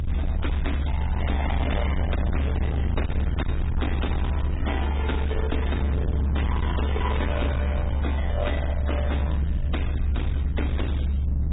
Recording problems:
low-pass filter; nothing above 3.8 kHz
lossy codec; MP3, log-spectral distance 3 dB
distortion; hard clipping, uneven, signal-to-distortion ratio 7 dB
low-frequency rumble; below 96 Hz, strongest tone 70 Hz, SNR -5 dB

